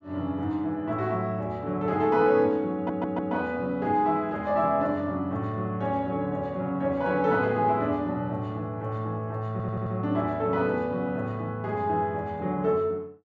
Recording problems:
audio stuttering; at 3 s and at 9.5 s

